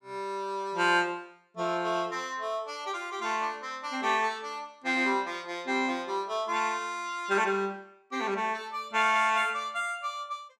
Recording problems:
none

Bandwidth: 14.5 kHz